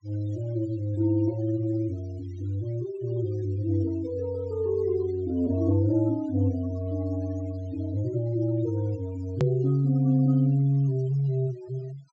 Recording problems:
treble cut off; nothing above 8 kHz
noise reduction artefacts; signal-to-artefact ratio 24 dB
edit click; at 9.5 s

